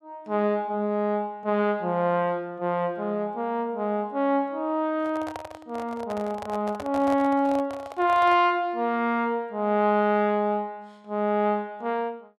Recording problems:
microphone handling noise; from 5 to 8.5 s; peak -7 dB vs average level

